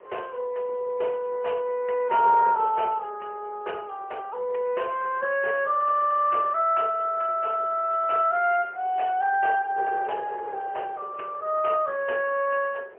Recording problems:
phone line; 370 Hz to 3.1 kHz, AMR-NB, then MP3
wind on the microphone; below 710 Hz, SNR 17 dB

